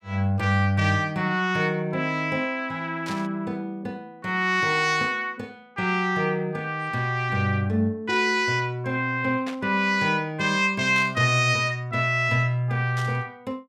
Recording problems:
static burst; 4 times, first at 3 s; peak -9 dB vs average level

